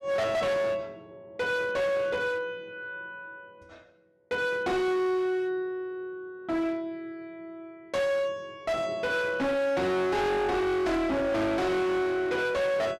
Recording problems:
distortion; hard clipping, signal-to-distortion ratio 7 dB

